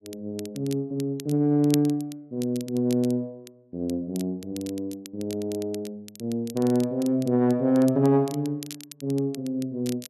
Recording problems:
crackling; vinyl, SNR 18 dB

